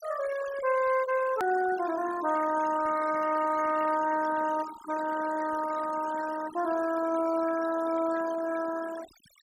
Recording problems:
noise reduction artefacts; signal-to-artefact ratio 13 dB
hard cut with a click; at 1.5 s

